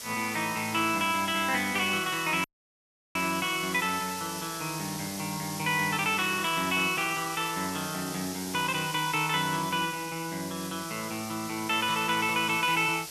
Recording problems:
hiss; SNR 9 dB
audio cutting out; at 2.5 s for 0.5 s

